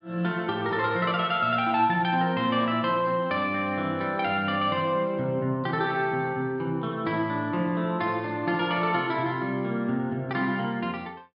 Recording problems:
none

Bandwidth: 5 kHz